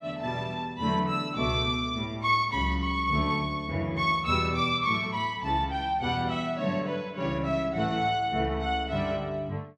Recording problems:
none

